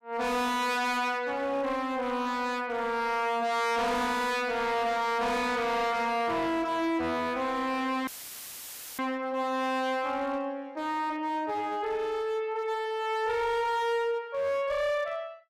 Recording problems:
distortion; hard clipping, signal-to-distortion ratio 6 dB
audio cutting out; at 8 s for 1 s; filled with static

